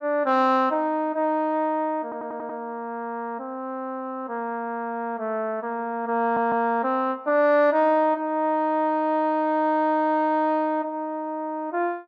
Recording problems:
audio stuttering; at 2 s and at 6 s

